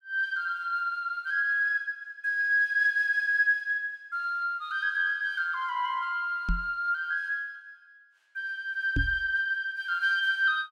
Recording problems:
microphone thump; at 6.5 s and at 9 s; peak +2 dB vs average level

